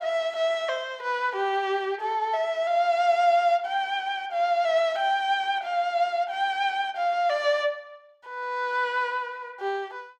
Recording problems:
none

